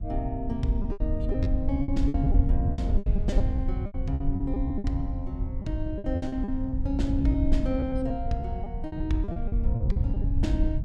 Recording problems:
low-frequency rumble; below 80 Hz, SNR -2 dB
lost packets; 15% of the sound replaced, filled with repeated pitch periods

